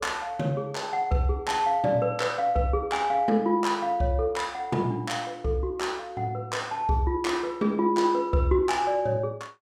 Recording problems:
none

